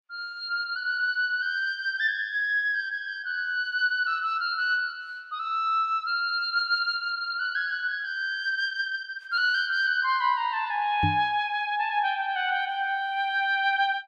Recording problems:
knock on the microphone; at 11 s; peak +2 dB vs average level

